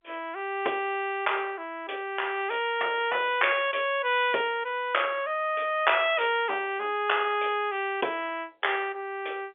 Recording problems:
phone line; 300 Hz to 3.5 kHz, G.711

